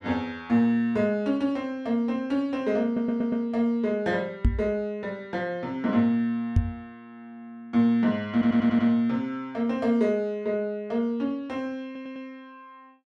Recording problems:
stutter; at 3 s, at 8.5 s and at 12 s
microphone thump; at 4.5 s and at 6.5 s; peak +7 dB vs average level

